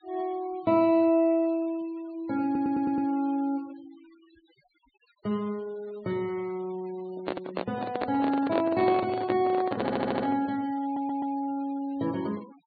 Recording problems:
treble cut off; nothing above 4.6 kHz
denoising artefacts; signal-to-artefact ratio 24 dB
stutter; at 2.5 s, at 10 s and at 11 s
handling noise; from 7 to 10 s; peak +2 dB vs average level

